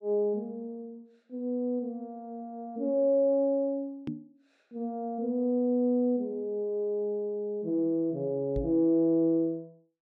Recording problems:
microphone bump; at 4 s and at 8.5 s; peak -2 dB vs average level

